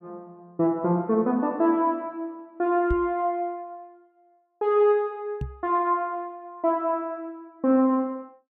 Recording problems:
knock on the microphone; at 3 s and at 5.5 s; peak -1 dB vs average level

